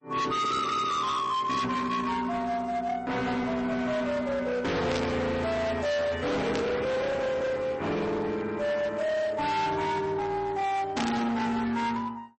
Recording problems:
lossy compression; MP3, then MP3, log-spectral distance 2 dB, nothing above 8.2 kHz
distortion; hard clipping, signal-to-distortion ratio 8 dB
burst of static; at 5 s, at 6.5 s and at 11 s; peak -1 dB vs average level

